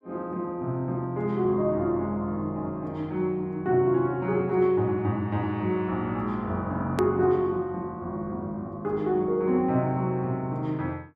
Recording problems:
hard cut with a click; at 7 s

